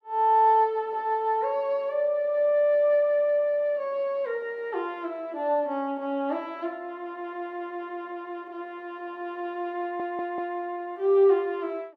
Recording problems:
audio stuttering; at 10 s

